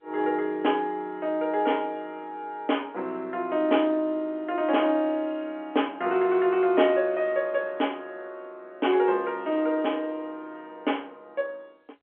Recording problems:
phone line; 220 Hz to 3.3 kHz, G.711

